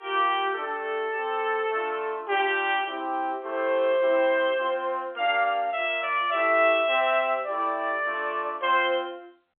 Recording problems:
telephone audio; 280 Hz to 3.5 kHz, G.711

